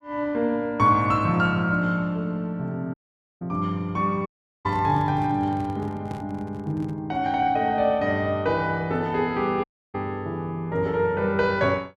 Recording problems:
dropout; at 3 s, at 4.5 s and at 9.5 s
microphone handling noise; from 4.5 to 7 s; peak -6 dB vs average level

